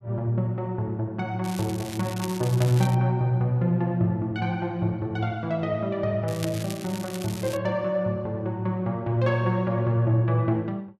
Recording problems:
crackling; from 1.5 to 3 s and from 6.5 to 7.5 s; loose cable, SNR 14 dB

